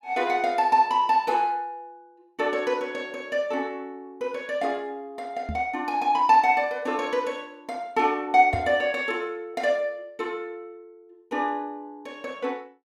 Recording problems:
knock on the microphone; at 5.5 s and at 8.5 s; peak -2 dB vs average level

